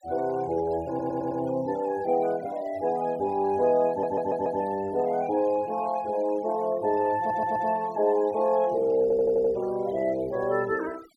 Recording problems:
denoising artefacts; signal-to-artefact ratio 23 dB
audio stuttering; 4 times, first at 1 s

